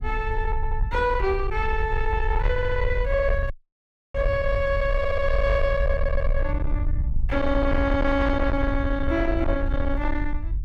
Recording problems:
distortion; soft clipping, signal-to-distortion ratio 10 dB
rumble; below 70 Hz, SNR 3 dB
stutter; 4 times, first at 0.5 s
dropout; at 3.5 s for 0.5 s

